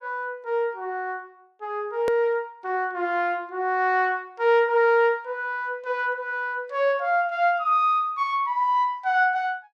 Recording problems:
hard cut with a click; at 2 s

